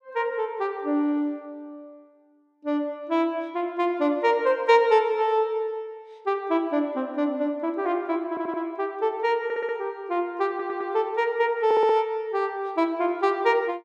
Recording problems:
audio stuttering; 4 times, first at 8.5 s

